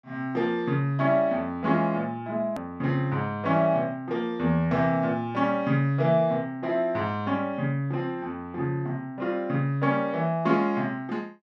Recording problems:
edit click; at 2.5 s

